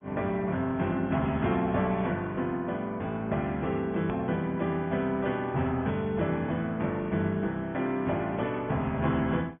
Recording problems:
treble missing; nothing above 3.5 kHz
codec artefacts; MP2, then Opus, log-spectral distance 2 dB
edit click; at 4 s

